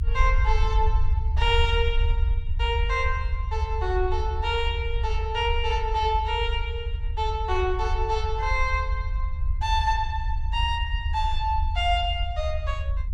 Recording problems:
rumble; below 72 Hz, SNR 1 dB

